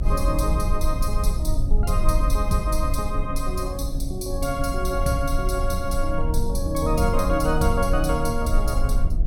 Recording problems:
hum; 60 Hz, harmonics up to 720 Hz, SNR 12 dB
rumble; below 54 Hz, strongest tone 22 Hz, SNR 1 dB

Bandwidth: 16.5 kHz